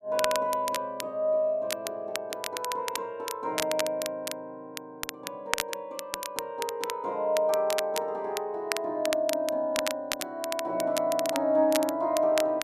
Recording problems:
crackling; vinyl, SNR 7 dB

